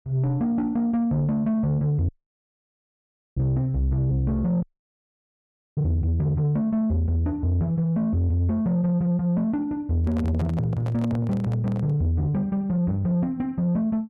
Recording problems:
distorted audio; soft clipping, signal-to-distortion ratio 11 dB
audio cutting out; at 2 s for 1.5 s and at 4.5 s for 1 s
handling noise; from 10 to 12 s; peak -3 dB vs average level

